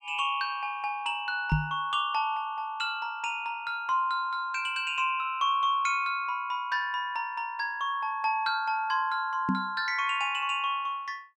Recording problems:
microphone bump; at 1.5 s and at 9.5 s; peak +6 dB vs average level

